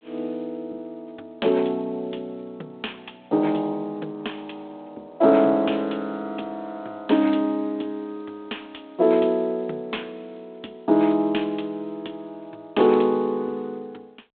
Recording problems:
phone line; 240 Hz to 3.6 kHz, G.726

